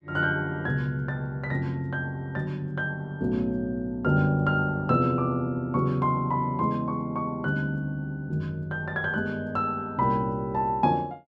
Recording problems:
none

